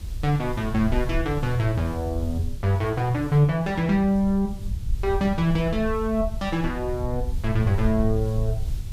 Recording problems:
hiss; SNR 24 dB
low-frequency rumble; below 74 Hz, SNR 8 dB

